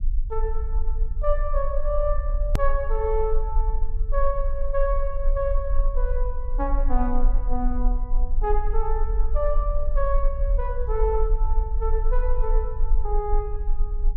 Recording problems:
low-frequency rumble; below 40 Hz, strongest tone 18 Hz, SNR -2 dB
edit click; at 2.5 s

